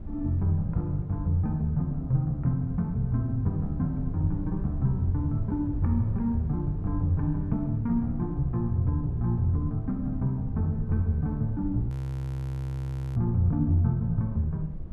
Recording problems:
rumble; below 100 Hz, SNR 12 dB
audio freezing; at 12 s for 1.5 s

